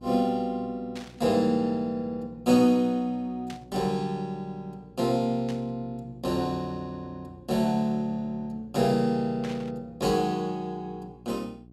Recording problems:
hum; 60 Hz, harmonics up to 780 Hz, SNR 23 dB
static burst; 4 times, first at 1 s; peak -9 dB vs average level

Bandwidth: 16 kHz